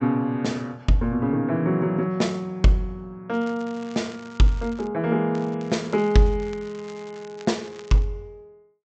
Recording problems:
treble missing; nothing above 8 kHz
crackle; from 3.5 to 5 s and from 5.5 to 8 s; loose cable, SNR 24 dB

